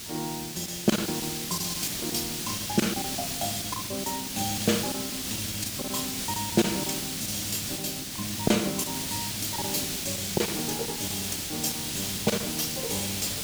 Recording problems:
hiss; SNR 0 dB
packet loss; 10% of the sound replaced, filled with silence

